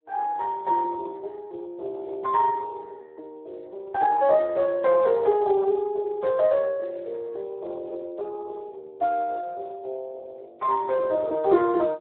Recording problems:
phone line; 320 Hz to 2.1 kHz, Speex

